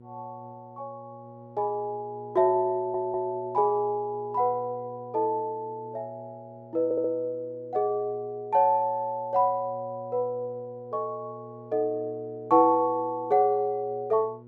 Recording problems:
hum; 60 Hz, harmonics up to 840 Hz, SNR 21 dB
audio stuttering; at 3 s and at 7 s

